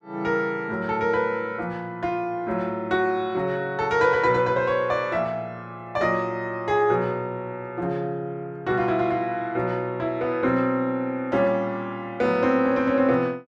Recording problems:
none

